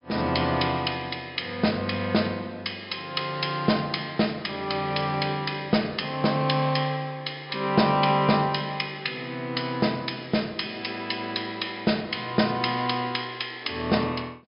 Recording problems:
low-pass filter; nothing above 5.5 kHz

